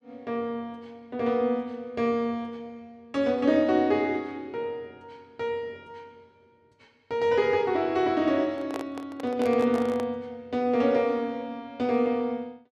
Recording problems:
handling noise; from 8.5 to 10 s; peak -3 dB vs average level

